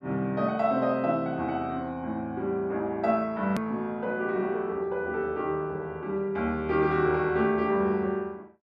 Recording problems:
hard cut with a click; at 3.5 s

